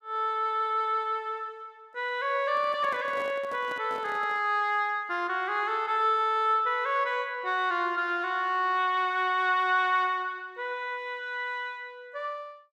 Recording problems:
handling noise; from 2.5 to 4.5 s; peak -11 dB vs average level

